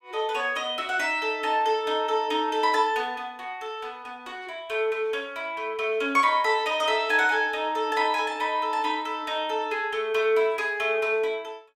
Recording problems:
none

